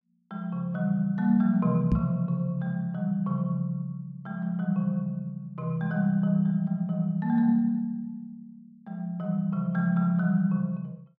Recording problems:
microphone thump; at 2 s; peak +5 dB vs average level

